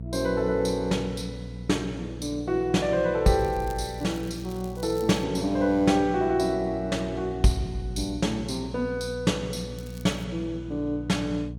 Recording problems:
electrical hum; 60 Hz, harmonics up to 480 Hz, SNR 12 dB
crackle; from 3.5 to 5 s and at 10 s; loose cable, SNR 23 dB

